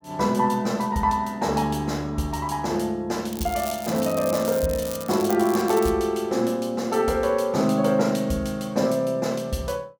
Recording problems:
crackling; from 3.5 to 6 s; loose cable, SNR 12 dB

